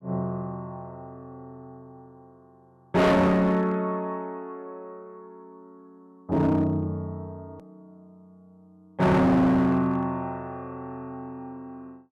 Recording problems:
distorted audio; hard clipping, signal-to-distortion ratio 6 dB
edit click; at 7.5 s

